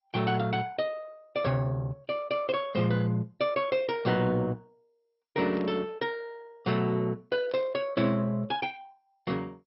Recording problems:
codec artefacts; MP2, log-spectral distance 2 dB, nothing above 5.3 kHz
static burst; at 5.5 s and at 7.5 s; peak -13 dB vs average level

